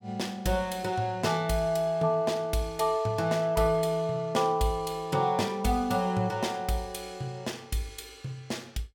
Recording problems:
none

